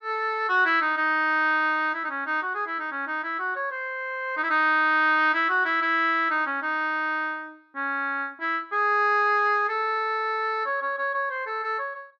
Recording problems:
none

